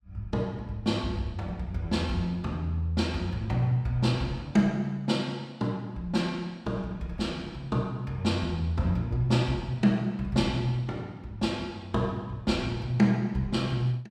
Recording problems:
none

